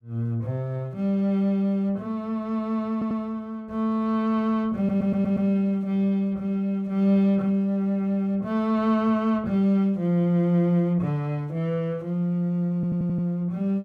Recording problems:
stutter; at 3 s, at 5 s and at 13 s

